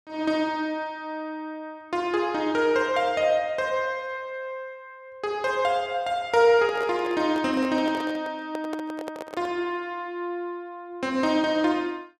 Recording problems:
handling noise; from 6.5 to 9.5 s; peak -6 dB vs average level

